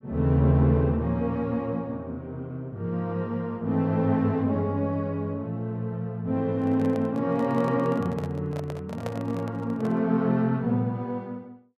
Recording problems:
microphone handling noise; from 6.5 to 10 s; peak -4 dB vs average level

